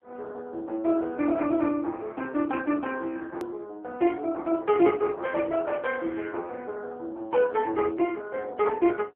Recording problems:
phone line; 260 Hz to 3.4 kHz, AMR-NB
hard cut with a click; at 3.5 s

